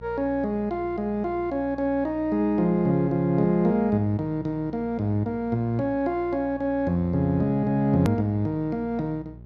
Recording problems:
hum; 60 Hz, harmonics up to 600 Hz, SNR 20 dB
edit click; at 8 s

